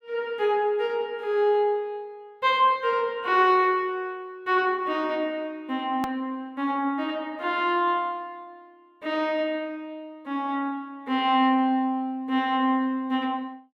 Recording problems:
click at an edit; at 6 s

